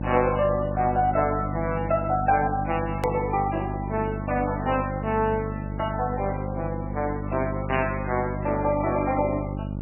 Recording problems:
codec artefacts; MP3, log-spectral distance 4 dB, nothing above 2.4 kHz
hum; 50 Hz, harmonics up to 900 Hz, SNR 5 dB
hard cut with a click; at 3 s

